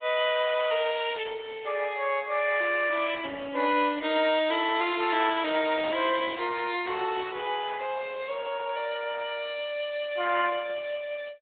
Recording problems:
treble missing; nothing above 4 kHz
codec artefacts; Opus, log-spectral distance 5 dB

